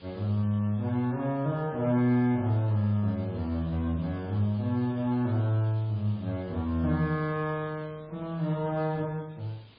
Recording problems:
codec artefacts; MP3, log-spectral distance 2 dB, nothing above 11.3 kHz
background hiss; SNR 26 dB

